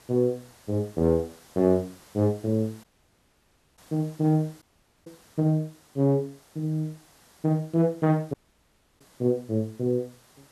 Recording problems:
hiss; slope -3 dB per octave, SNR 27 dB
audio cutting out; at 3 s for 1 s, at 4.5 s and at 8.5 s for 0.5 s

